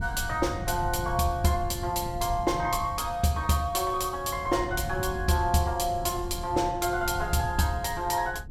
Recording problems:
wind noise; below 130 Hz, SNR 10 dB

